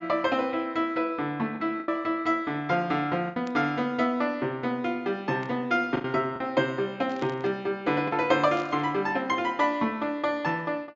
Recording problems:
treble cut off; nothing above 7.4 kHz
lost packets; 3% of the sound replaced, filled with the last packet
static burst; 4 times, first at 3.5 s; peak -12 dB vs average level

